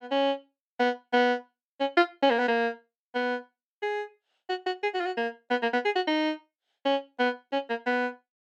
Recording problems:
none

